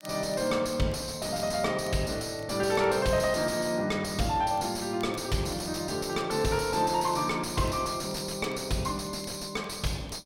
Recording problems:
distortion; soft clipping, signal-to-distortion ratio 5 dB
crackle; vinyl, SNR 25 dB

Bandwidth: 16 kHz